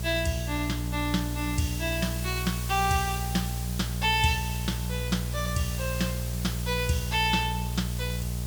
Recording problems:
electrical hum; 60 Hz, harmonics up to 840 Hz, SNR 3 dB
background hiss; slope +2 dB per octave, SNR 9 dB

